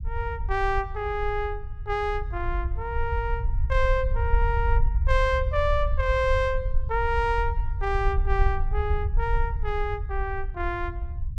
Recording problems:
rumble; below 66 Hz, SNR 1 dB

